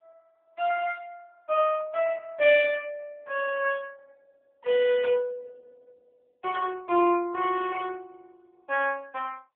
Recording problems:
telephone audio; 300 Hz to 3.4 kHz, AMR-NB

